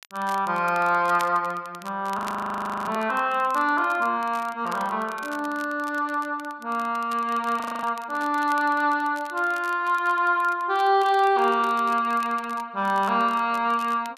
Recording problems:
crackle; vinyl, SNR 22 dB
frozen audio; at 2 s for 0.5 s and at 7.5 s

